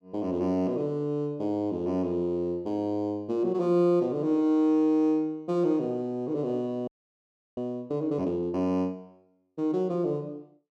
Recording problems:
audio freezing; at 7 s for 0.5 s

